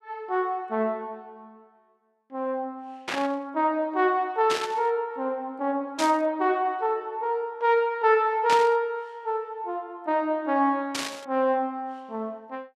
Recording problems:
burst of static; 5 times, first at 3 s; peak +1 dB vs average level

